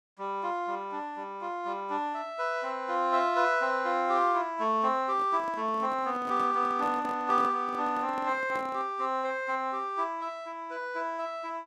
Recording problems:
microphone handling noise; from 5 to 9 s; peak -8 dB vs average level

